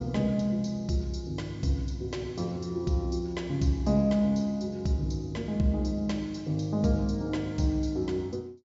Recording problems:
treble cut off; nothing above 8 kHz

